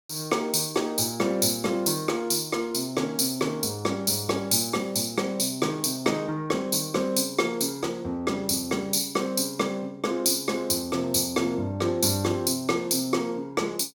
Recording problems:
none

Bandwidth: 18 kHz